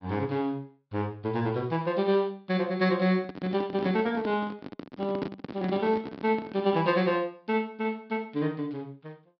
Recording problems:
low-pass filter; nothing above 5.5 kHz
handling noise; from 3 to 7 s; peak 0 dB vs average level

